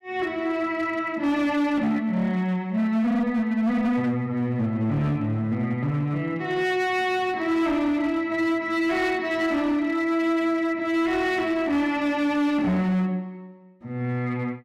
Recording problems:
distorted audio; hard clipping, signal-to-distortion ratio 12 dB

